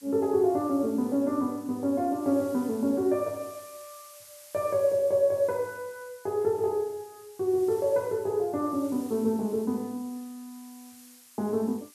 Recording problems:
background hiss; slope +3 dB per octave, SNR 22 dB

